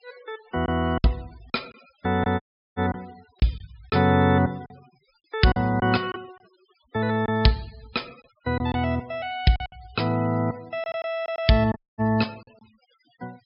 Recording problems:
low-pass filter; nothing above 5.5 kHz
denoising artefacts; signal-to-artefact ratio 26 dB
lost packets; 7% of the sound replaced, filled with silence
audio cutting out; at 2.5 s and at 12 s

